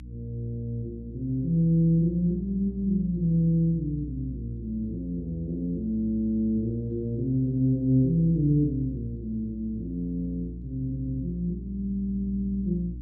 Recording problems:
electrical hum; 60 Hz, harmonics up to 300 Hz, SNR 12 dB

